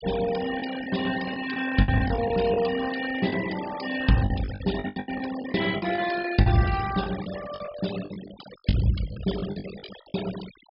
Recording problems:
treble missing; nothing above 5.5 kHz
noise reduction artefacts; signal-to-artefact ratio 12 dB
lost packets; 13% of the sound replaced, filled with the last packet

